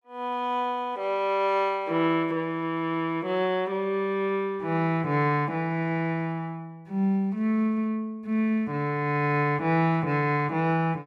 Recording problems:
none

